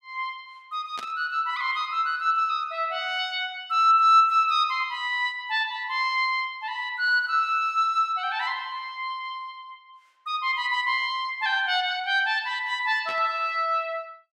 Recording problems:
burst of static; at 1 s and at 13 s; peak -10 dB vs average level

